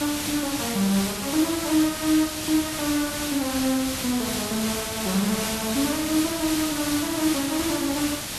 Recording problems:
background hiss; slope 0 dB per octave, SNR 3 dB

